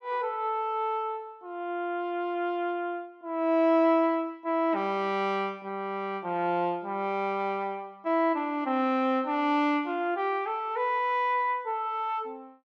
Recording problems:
none

